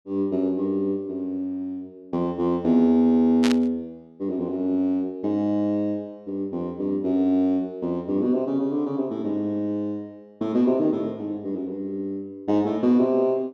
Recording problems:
static burst; at 3.5 s; peak 0 dB vs average level

